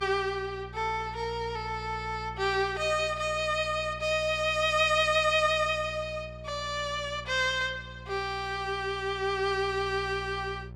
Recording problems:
electrical hum; 60 Hz, harmonics up to 780 Hz, SNR 16 dB

